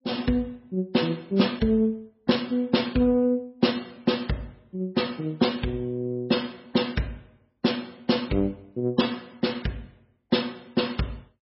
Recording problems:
codec artefacts; MP3, log-spectral distance 3 dB, nothing above 5.5 kHz

